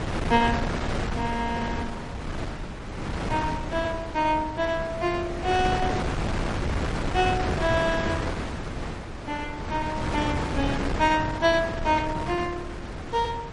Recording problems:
lossy codec; MP3, log-spectral distance 2 dB
wind noise; below 900 Hz, SNR 4 dB

